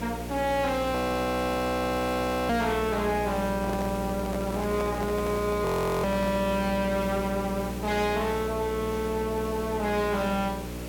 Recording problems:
distorted audio; hard clipping, signal-to-distortion ratio 6 dB
hum; 60 Hz, harmonics up to 600 Hz, SNR 8 dB
hiss; slope -3 dB per octave, SNR 14 dB
frozen audio; at 1 s for 1.5 s and at 5.5 s
microphone handling noise; from 3.5 to 6.5 s; peak -4 dB vs average level

